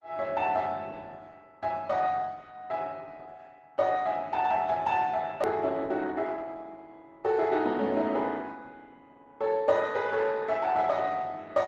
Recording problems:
lossy codec; Opus, log-spectral distance 3 dB, nothing above 13.1 kHz
click at an edit; at 5.5 s

